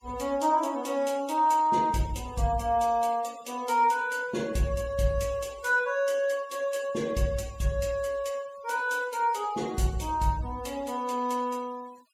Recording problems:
denoising artefacts; signal-to-artefact ratio 22 dB

